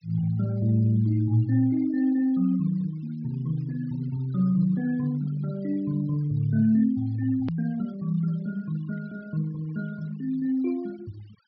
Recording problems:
treble cut off; nothing above 5.5 kHz
denoising artefacts; signal-to-artefact ratio 26 dB
edit click; at 7.5 s

